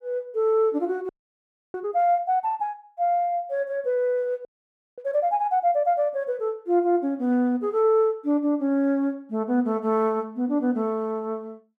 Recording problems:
audio freezing; at 1 s for 0.5 s and at 4.5 s for 0.5 s

